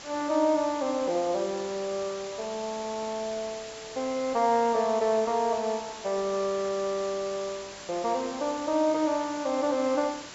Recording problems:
treble missing; nothing above 8 kHz
hiss; slope -1 dB per octave, SNR 13 dB

